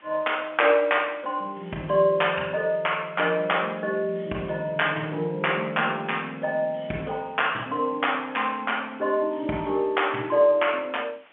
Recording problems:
telephone audio; 190 Hz to 3.3 kHz, G.711
hiss; SNR 29 dB

